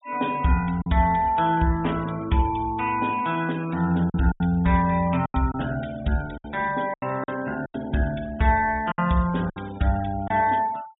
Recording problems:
treble missing; nothing above 4 kHz
noise reduction artefacts; signal-to-artefact ratio 21 dB
lost packets; 6% of the sound replaced, filled with silence

